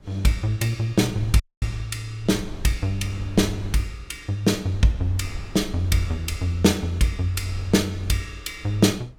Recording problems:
wind on the microphone; below 86 Hz, SNR 15 dB
audio cutting out; at 1.5 s

